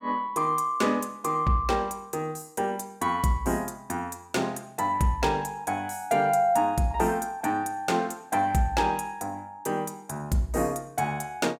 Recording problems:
none

